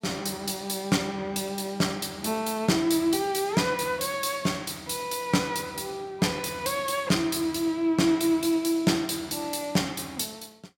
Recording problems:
none

